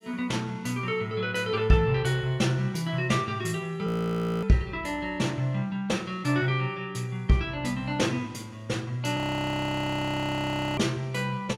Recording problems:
frozen audio; at 4 s for 0.5 s and at 9 s for 1.5 s

